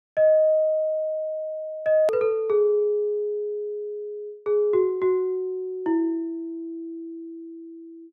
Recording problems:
edit click; at 2 s

